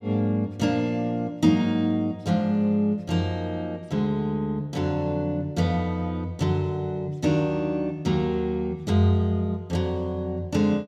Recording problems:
none

